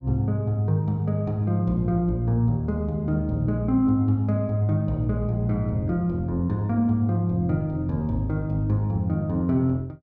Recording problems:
none

